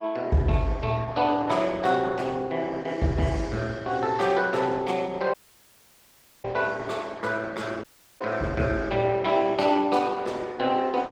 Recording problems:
lossy compression; Opus, log-spectral distance 3 dB
dropout; at 5.5 s for 1 s and at 8 s

